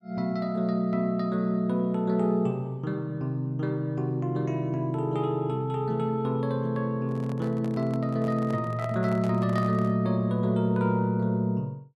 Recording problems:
handling noise; from 7 to 10 s; peak -8 dB vs average level

